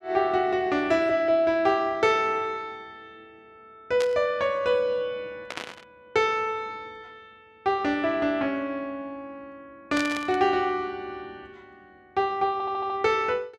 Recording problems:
burst of static; at 4 s, at 5.5 s and at 10 s; peak -4 dB vs average level
stutter; at 13 s

